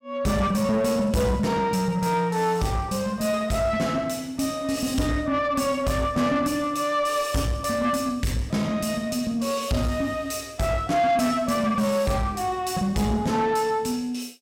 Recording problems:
distorted audio; soft clipping, signal-to-distortion ratio 11 dB

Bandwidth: 16 kHz